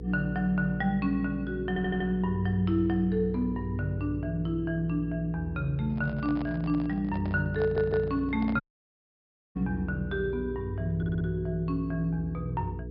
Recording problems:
low-pass filter; nothing above 5.5 kHz
electrical hum; 60 Hz, harmonics up to 480 Hz, SNR 10 dB
audio stuttering; at 1.5 s, at 7.5 s and at 11 s
handling noise; from 6 to 9.5 s; peak -7 dB vs average level
dropout; at 8.5 s for 1 s

